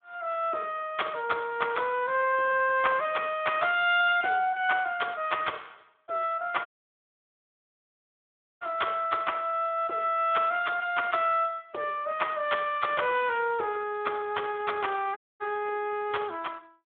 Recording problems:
telephone audio; 300 Hz to 3.6 kHz, Speex
dropout; at 6.5 s for 2 s and at 15 s

